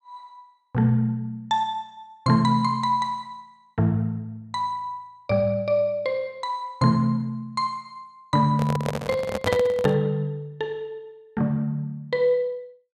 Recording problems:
handling noise; from 8.5 to 10 s; peak +4 dB vs average level

